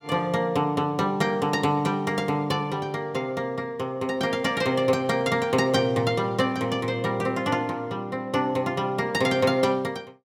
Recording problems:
none

